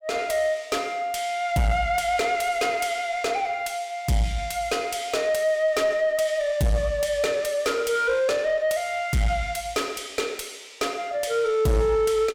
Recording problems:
distorted audio; soft clipping, signal-to-distortion ratio 11 dB

